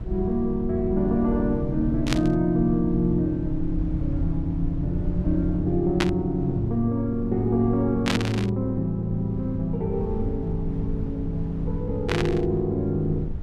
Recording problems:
hum; 60 Hz, harmonics up to 960 Hz, SNR 25 dB
low-frequency rumble; below 100 Hz, SNR 9 dB
burst of static; 4 times, first at 2 s; peak +4 dB vs average level

